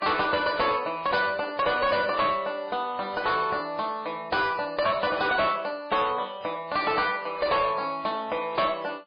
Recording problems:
lossy compression; MP3, log-spectral distance 4 dB, nothing above 4.5 kHz
distortion; soft clipping, signal-to-distortion ratio 8 dB

